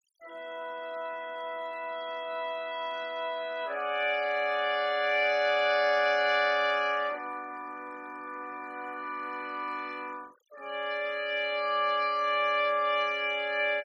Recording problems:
noise reduction artefacts; signal-to-artefact ratio 25 dB

